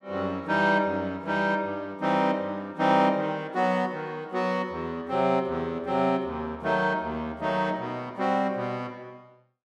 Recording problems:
none

